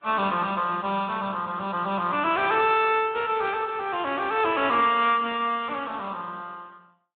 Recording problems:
low-pass filter; nothing above 4 kHz
lossy compression; Speex, then AAC, log-spectral distance 3 dB

